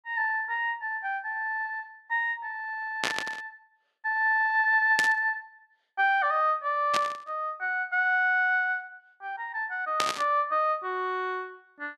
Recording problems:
static burst; 4 times, first at 3 s; peak +4 dB vs average level

